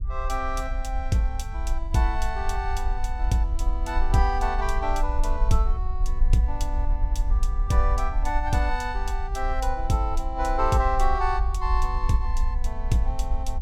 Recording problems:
low-frequency rumble; below 50 Hz, strongest tone 22 Hz, SNR 2 dB

